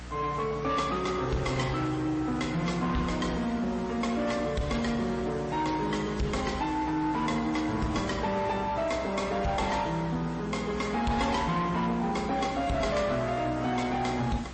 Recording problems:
codec artefacts; AAC, then MP3, log-spectral distance 4 dB, nothing above 8.2 kHz
distorted audio; soft clipping, signal-to-distortion ratio 12 dB
hum; 60 Hz, harmonics up to 300 Hz, SNR 16 dB
hiss; slope -3 dB per octave, SNR 17 dB

